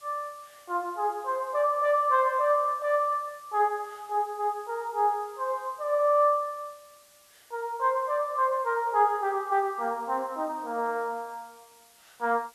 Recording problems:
background hiss; slope +1 dB per octave, SNR 28 dB

